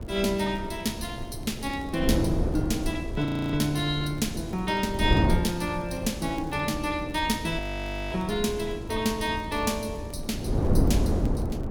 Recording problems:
wind noise; below 280 Hz, SNR 3 dB
crackle; vinyl, SNR 29 dB
frozen audio; at 3.5 s and at 7.5 s for 0.5 s

